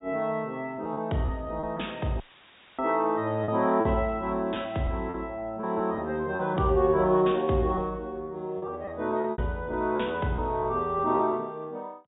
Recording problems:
treble missing; nothing above 4 kHz
packet loss; 6% of the sound replaced, filled with repeated pitch periods
audio cutting out; at 2 s for 0.5 s; filled with static

